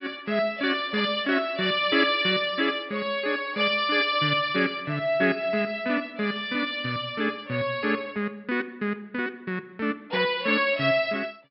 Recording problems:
treble cut off; nothing above 5.4 kHz

